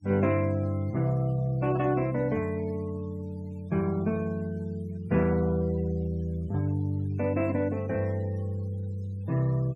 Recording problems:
denoising artefacts; signal-to-artefact ratio 24 dB

